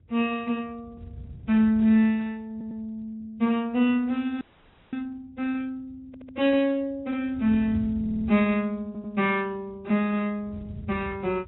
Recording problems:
low-pass filter; nothing above 3.7 kHz
lossy codec; Speex, log-spectral distance 2 dB
wind noise; below 140 Hz, SNR 15 dB
stutter; 4 times, first at 2.5 s
frozen audio; at 4.5 s for 0.5 s

